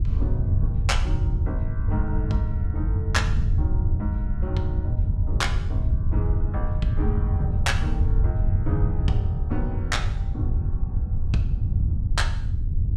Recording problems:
wind noise; below 98 Hz, SNR -6 dB

